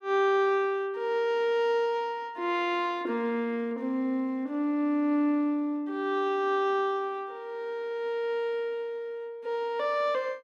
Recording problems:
none

